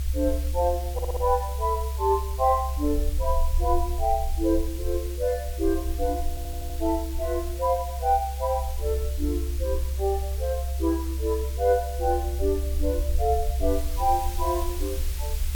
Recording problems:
background hiss; slope 0 dB per octave, SNR 14 dB
rumble; below 68 Hz, strongest tone 66 Hz, SNR 3 dB
audio stuttering; at 1 s and at 6.5 s

